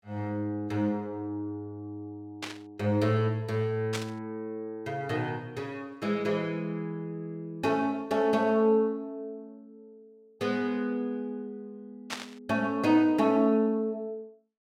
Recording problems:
static burst; at 2.5 s, at 4 s and at 12 s; peak -1 dB vs average level

